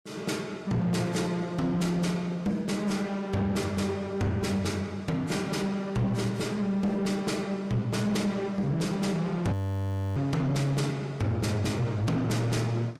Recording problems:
lossy codec; Vorbis, log-spectral distance 2 dB
distorted audio; soft clipping, signal-to-distortion ratio 12 dB
audio freezing; at 9.5 s for 0.5 s

